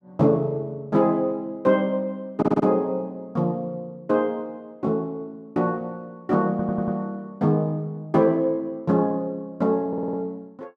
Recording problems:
audio stuttering; at 2.5 s, at 6.5 s and at 10 s

